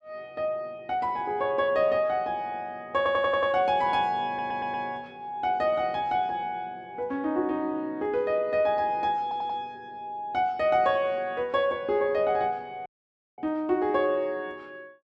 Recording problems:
audio stuttering; at 3 s, at 4.5 s and at 9 s
audio cutting out; at 13 s for 0.5 s

